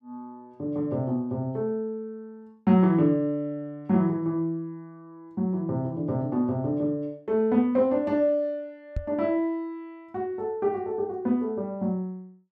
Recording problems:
knock on the microphone; at 9 s; peak 0 dB vs average level

